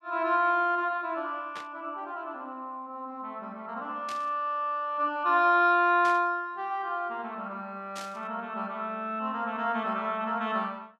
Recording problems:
static burst; 4 times, first at 1.5 s; peak -8 dB vs average level

